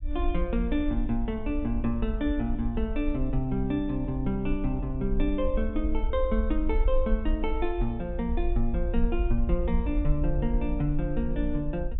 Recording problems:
treble missing; nothing above 4 kHz
low-frequency rumble; below 52 Hz, strongest tone 24 Hz, SNR 3 dB

